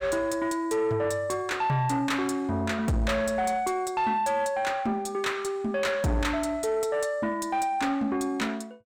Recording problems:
distortion; soft clipping, signal-to-distortion ratio 11 dB

